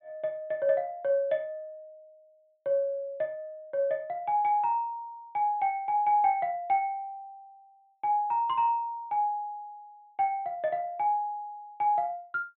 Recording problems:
treble missing; nothing above 4 kHz

